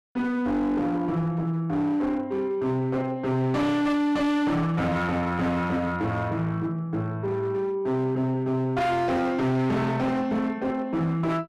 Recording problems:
distorted audio; hard clipping, uneven, signal-to-distortion ratio 7 dB

